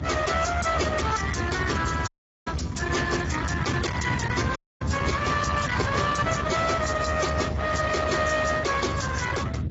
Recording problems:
lossy codec; Speex, then AAC, log-spectral distance 6 dB, nothing above 7.6 kHz
distortion; soft clipping, signal-to-distortion ratio 6 dB
hum; 50 Hz, harmonics up to 1.9 kHz, SNR 11 dB
low-frequency rumble; below 1.2 kHz, SNR 4 dB
audio cutting out; at 2 s and at 4.5 s

